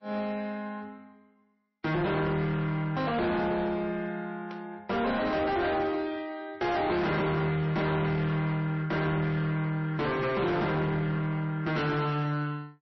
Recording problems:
lossy compression; MP3, log-spectral distance 2 dB, nothing above 5.7 kHz
distortion; soft clipping, signal-to-distortion ratio 6 dB
burst of static; at 4.5 s and at 7 s; peak -12 dB vs average level

